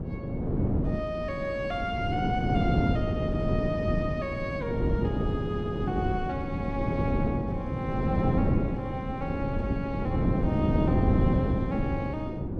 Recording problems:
wind noise; below 290 Hz, SNR -4 dB

